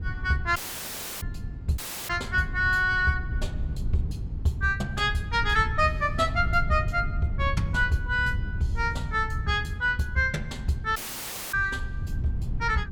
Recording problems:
wind on the microphone; below 110 Hz, SNR 7 dB
audio cutting out; at 0.5 s for 0.5 s, at 2 s and at 11 s for 0.5 s

